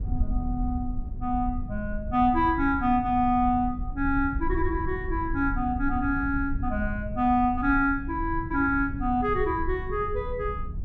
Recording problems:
rumble; below 76 Hz, SNR 8 dB

